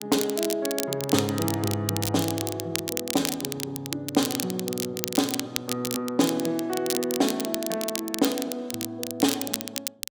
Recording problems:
crackling; vinyl, SNR 4 dB

